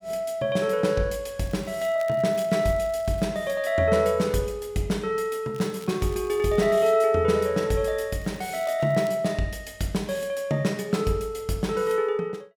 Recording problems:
crackle; from 1.5 to 3.5 s, from 5.5 to 7 s and at 8 s; loose cable, SNR 25 dB

